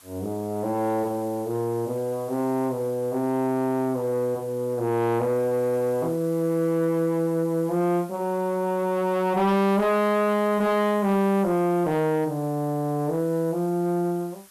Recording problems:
distorted audio; soft clipping, signal-to-distortion ratio 10 dB
hiss; SNR 24 dB

